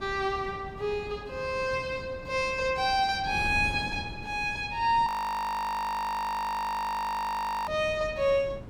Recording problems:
wind noise; below 300 Hz, SNR 15 dB
frozen audio; at 5 s for 2.5 s

